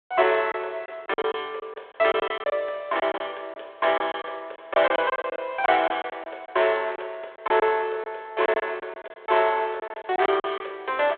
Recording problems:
telephone audio; 340 Hz to 3.7 kHz, G.726
packet loss; 11% of the sound replaced, filled with silence

